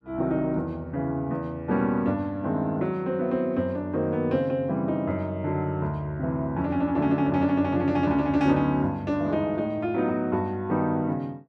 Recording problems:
none

